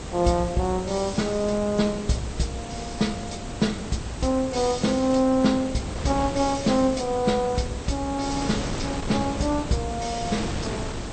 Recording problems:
lossy codec; MP2, then AAC, log-spectral distance 10 dB, nothing above 8.5 kHz
background hiss; slope +2 dB per octave, SNR 19 dB
wind noise; below 700 Hz, SNR 9 dB

